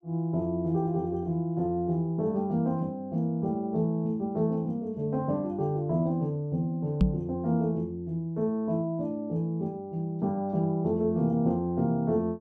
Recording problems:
knock on the microphone; at 7 s; peak +9 dB vs average level

